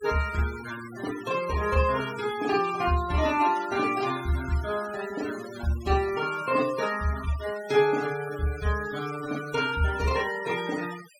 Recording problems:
denoising artefacts; signal-to-artefact ratio 14 dB

